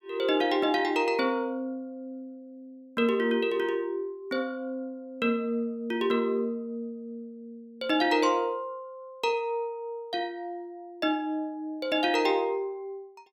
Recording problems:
none

